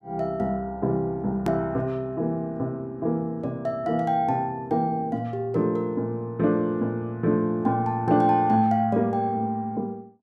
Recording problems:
hard cut with a click; at 1.5 s

